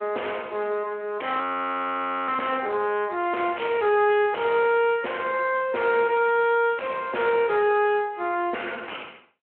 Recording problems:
phone line; 300 Hz to 3.2 kHz, Speex
distortion; soft clipping, signal-to-distortion ratio 8 dB
frozen audio; at 1.5 s for 1 s

